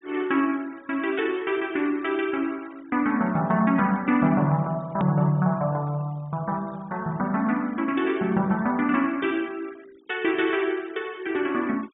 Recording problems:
treble cut off; nothing above 4 kHz
denoising artefacts; signal-to-artefact ratio 26 dB
edit click; at 5 s

